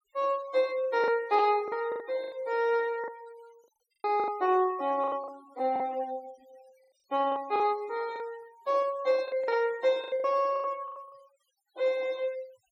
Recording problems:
denoising artefacts; signal-to-artefact ratio 24 dB
lost packets; 10% of the sound replaced, filled with the last packet

